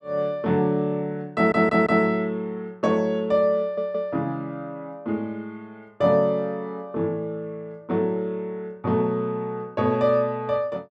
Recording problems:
audio stuttering; at 1.5 s and at 3.5 s

